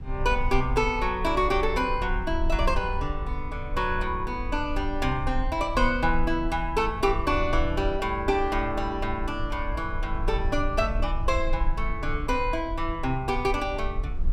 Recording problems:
low-frequency rumble; below 54 Hz, strongest tone 22 Hz, SNR 6 dB

